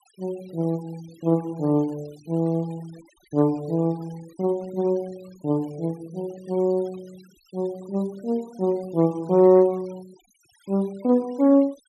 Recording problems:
noise reduction artefacts; signal-to-artefact ratio 27 dB

